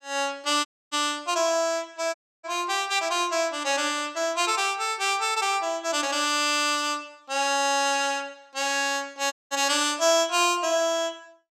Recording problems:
dropout; at 0.5 s, at 2 s and at 9.5 s

